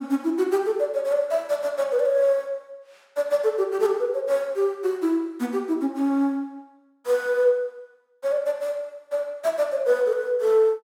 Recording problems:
none

